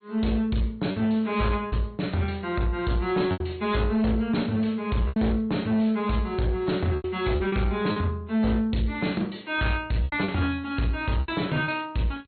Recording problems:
treble cut off; nothing above 4.2 kHz
lossy codec; AAC, log-spectral distance 2 dB
distorted audio; soft clipping, signal-to-distortion ratio 12 dB
lost packets; 6% of the sound replaced, filled with repeated pitch periods

